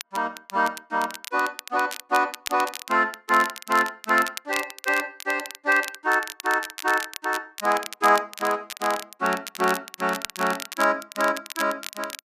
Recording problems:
crackle; vinyl, SNR 12 dB

